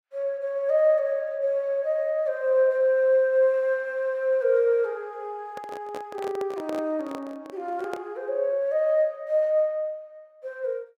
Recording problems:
handling noise; from 5.5 to 8 s; peak -7 dB vs average level

